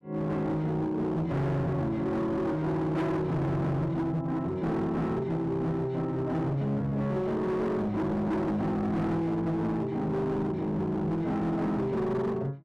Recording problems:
distortion; hard clipping, signal-to-distortion ratio 8 dB

